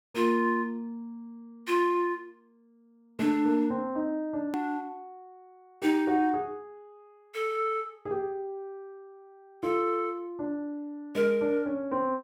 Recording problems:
hard cut with a click; at 4.5 s

